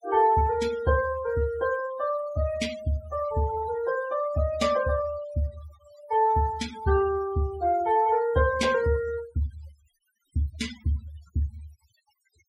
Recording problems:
denoising artefacts; signal-to-artefact ratio 15 dB

